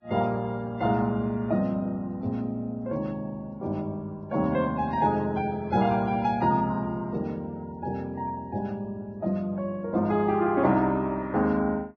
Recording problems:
codec artefacts; Vorbis, log-spectral distance 2 dB, nothing above 5.8 kHz

